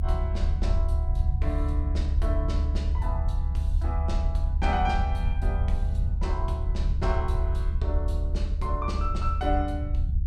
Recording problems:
low-frequency rumble; below 74 Hz, SNR -6 dB

